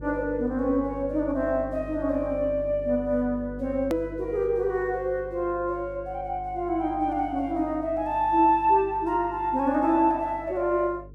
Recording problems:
electrical hum; 50 Hz, harmonics up to 450 Hz, SNR 17 dB
edit click; at 4 s

